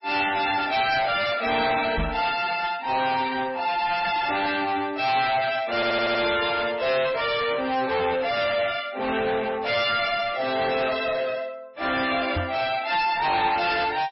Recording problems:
lossy compression; MP3, log-spectral distance 6 dB, nothing above 5.5 kHz
distortion; soft clipping, signal-to-distortion ratio 6 dB
knock on the microphone; at 2 s and at 12 s; peak +1 dB vs average level
stutter; at 6 s

